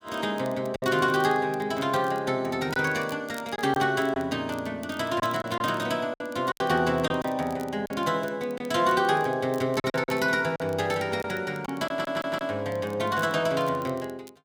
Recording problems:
crackling; vinyl, SNR 25 dB
lost packets; 5% of the sound replaced, filled with silence
audio stuttering; at 12 s

